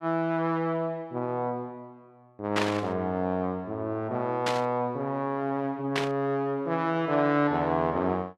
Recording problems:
burst of static; at 2.5 s, at 4.5 s and at 6 s; peak +4 dB vs average level

